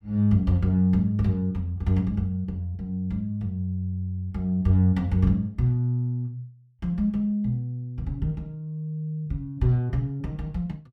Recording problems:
none

